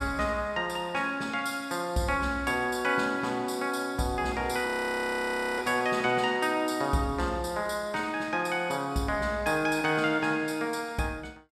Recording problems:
audio freezing; at 4.5 s for 1 s

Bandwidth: 15 kHz